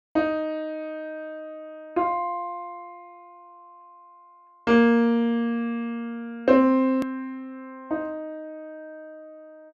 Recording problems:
edit click; at 7 s

